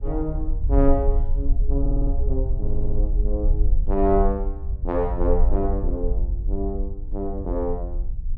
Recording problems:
low-frequency rumble; below 50 Hz, SNR -1 dB
stutter; at 2 s and at 2.5 s

